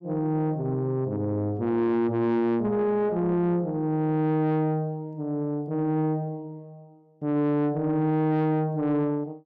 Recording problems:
distorted audio; soft clipping, signal-to-distortion ratio 12 dB

